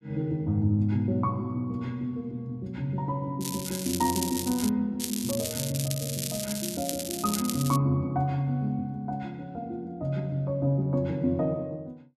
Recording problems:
crackling; from 3.5 to 4.5 s and from 5 to 8 s; loose cable, SNR 4 dB

